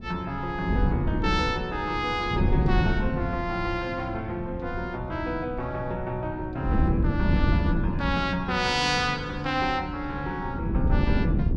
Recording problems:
wind noise; below 190 Hz, SNR 1 dB

